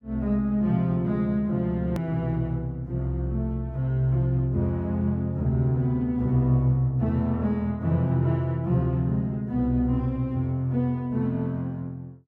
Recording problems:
hard cut with a click; at 2 s

